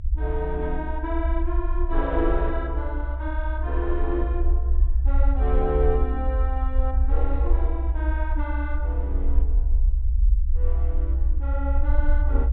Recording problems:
low-pass filter; nothing above 4 kHz
rumble; below 62 Hz, SNR -5 dB

